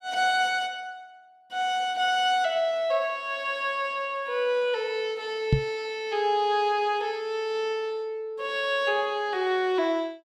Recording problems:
microphone bump; at 5.5 s; peak +8 dB vs average level

